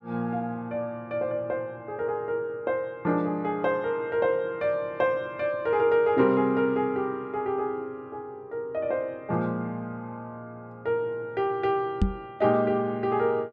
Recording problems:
microphone thump; at 12 s; peak +7 dB vs average level

